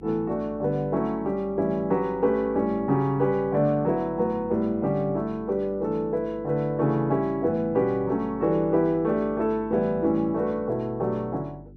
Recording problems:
electrical hum; 50 Hz, harmonics up to 400 Hz, SNR 21 dB

